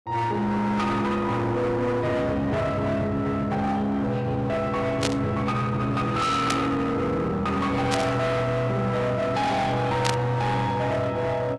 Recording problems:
lossy compression; AAC, log-spectral distance 2 dB, nothing above 11.6 kHz
distortion; hard clipping, signal-to-distortion ratio 8 dB
static burst; 4 times, first at 5 s; peak +3 dB vs average level

